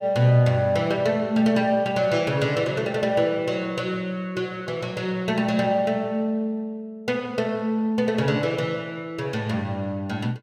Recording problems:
none

